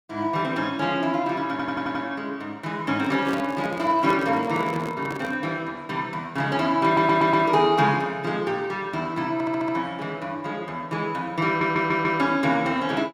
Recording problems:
stutter; 4 times, first at 1.5 s
microphone handling noise; from 3 to 5.5 s; peak -3 dB vs average level

